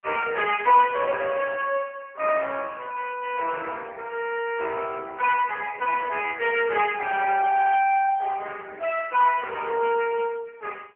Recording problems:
telephone audio; 260 Hz to 2.9 kHz, AMR-NB

